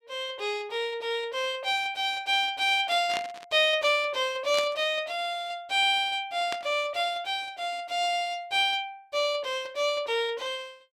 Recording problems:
burst of static; at 3 s, at 4.5 s and at 6.5 s; peak -2 dB vs average level

